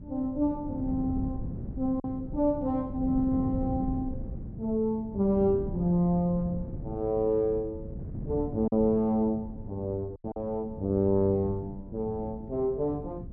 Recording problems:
wind noise; below 200 Hz, SNR 10 dB
packet loss; 1.6% of the sound replaced, filled with silence

